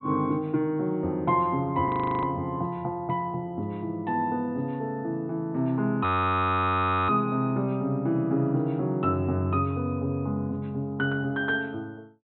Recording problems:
low-pass filter; nothing above 4 kHz
frozen audio; at 2 s and at 6 s for 1 s

